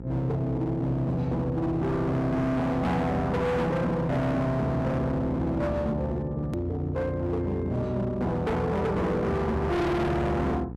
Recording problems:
distortion; hard clipping, signal-to-distortion ratio 6 dB
hum; 60 Hz, harmonics up to 900 Hz, SNR 11 dB
click at an edit; at 6.5 s

